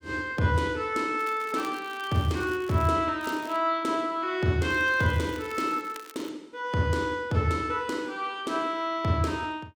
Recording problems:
crackle; from 1 to 3 s, at 3 s and from 4.5 to 6.5 s; loose cable, SNR 21 dB

